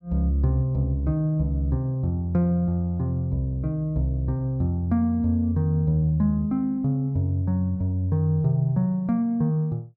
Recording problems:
none

